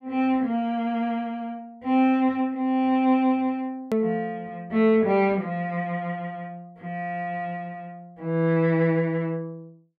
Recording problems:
edit click; at 4 s

